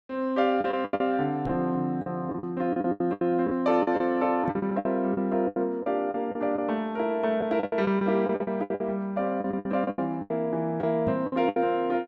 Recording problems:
packet loss; 15% of the sound replaced, filled with the last packet
microphone bump; at 1.5 s, at 4.5 s and at 11 s; peak -1 dB vs average level

